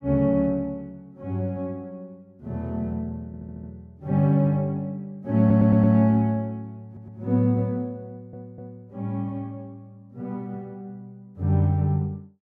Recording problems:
audio stuttering; 4 times, first at 3.5 s

